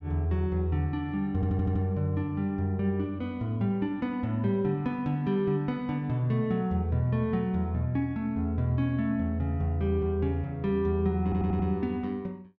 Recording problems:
stutter; at 1.5 s and at 11 s

